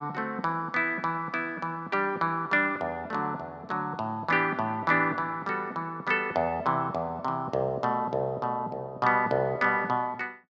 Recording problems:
none

